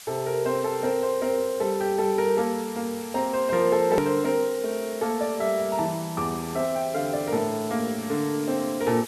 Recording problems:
hiss; slope +2 dB per octave, SNR 15 dB
edit click; at 4 s

